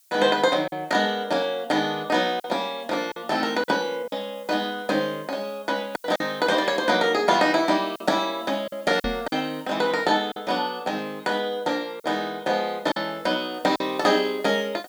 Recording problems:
hiss; slope +5 dB per octave, SNR 28 dB
packet loss; 4% of the sound replaced, filled with silence
knock on the microphone; at 9 s; peak -2 dB vs average level

